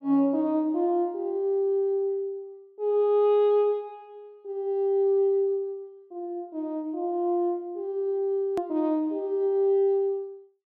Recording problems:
edit click; at 8.5 s

